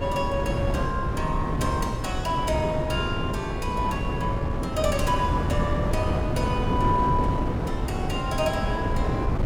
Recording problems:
wind noise; below 350 Hz, SNR -1 dB

